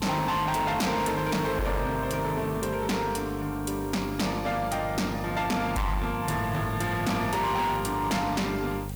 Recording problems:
distortion; hard clipping, signal-to-distortion ratio 8 dB
hum; 50 Hz, harmonics up to 750 Hz, SNR 10 dB
background hiss; slope -2 dB per octave, SNR 19 dB

